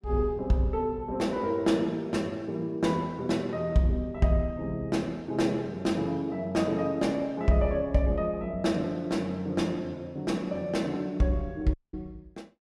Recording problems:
dropout; at 12 s

